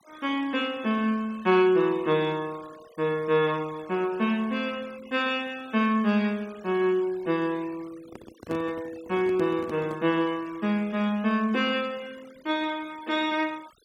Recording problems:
denoising artefacts; signal-to-artefact ratio 24 dB
microphone handling noise; from 8 to 10 s; peak -7 dB vs average level

